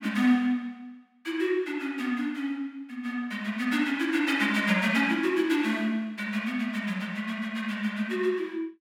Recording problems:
none

